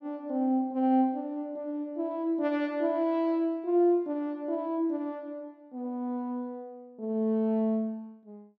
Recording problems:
none

